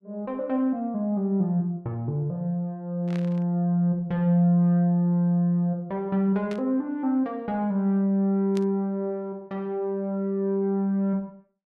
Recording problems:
static burst; at 3 s, at 6.5 s and at 8.5 s; peak -12 dB vs average level

